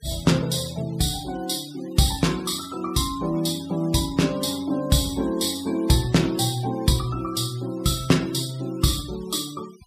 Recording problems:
denoising artefacts; signal-to-artefact ratio 19 dB

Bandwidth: 15 kHz